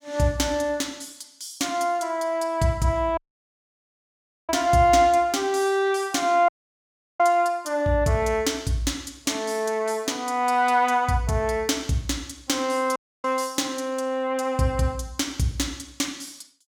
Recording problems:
dropout; at 3 s for 1.5 s, at 6.5 s for 0.5 s and at 13 s

